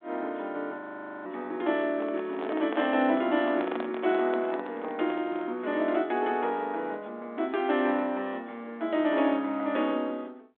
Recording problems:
phone line; 220 Hz to 3.6 kHz, G.726
audio freezing; at 1 s
handling noise; from 2 to 5.5 s; peak -2 dB vs average level

